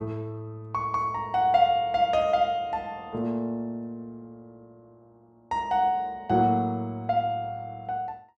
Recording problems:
none

